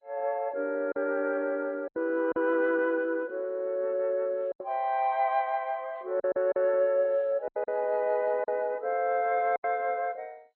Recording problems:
codec artefacts; MP2, log-spectral distance 2 dB
packet loss; 6% of the sound replaced, filled with silence

